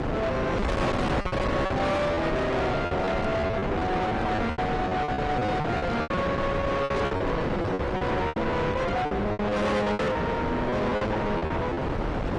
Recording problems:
codec artefacts; AAC, log-spectral distance 2 dB, nothing above 11 kHz
distorted audio; soft clipping, signal-to-distortion ratio 7 dB
wind noise; below 980 Hz, SNR 2 dB
lost packets; 16% of the sound replaced, filled with repeated pitch periods

